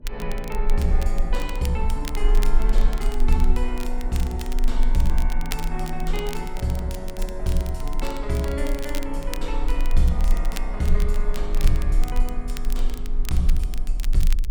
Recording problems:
low-frequency rumble; below 32 Hz, strongest tone 22 Hz, SNR -1 dB
wind on the microphone; below 230 Hz, SNR 17 dB
crackling; vinyl, SNR 12 dB

